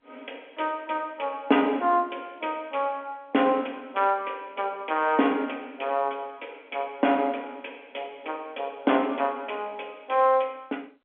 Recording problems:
phone line; 240 Hz to 3.5 kHz, G.711

